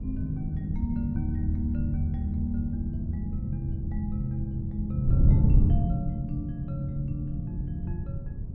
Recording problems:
wind noise; below 130 Hz, SNR -1 dB

